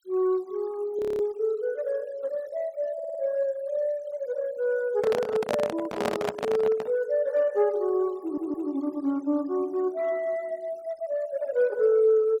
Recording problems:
noise reduction artefacts; signal-to-artefact ratio 26 dB
frozen audio; at 1 s
audio stuttering; at 3 s and at 8 s
handling noise; from 5 to 7 s; peak +3 dB vs average level

